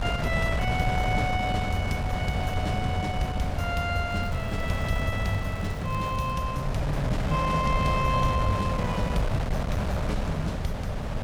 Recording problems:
wind on the microphone; below 530 Hz, SNR 0 dB
crackle; from 4 to 6.5 s; loose cable, SNR 22 dB

